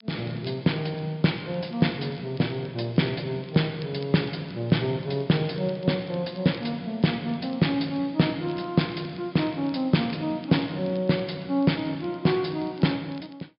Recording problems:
treble cut off; nothing above 5.5 kHz
crackling; vinyl, SNR 27 dB

